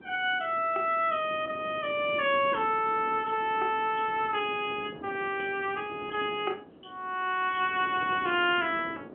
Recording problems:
phone line; 240 Hz to 3.3 kHz, G.711
wind on the microphone; below 510 Hz, SNR 18 dB

